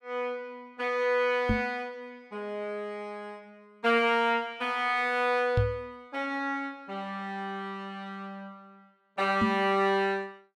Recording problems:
microphone thump; at 1.5 s, at 5.5 s and at 9.5 s; peak +6 dB vs average level

